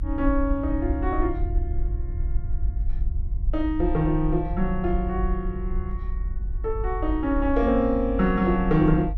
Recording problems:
rumble; below 58 Hz, SNR 5 dB

